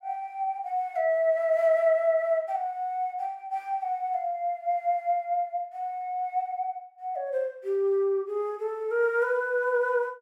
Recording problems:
none

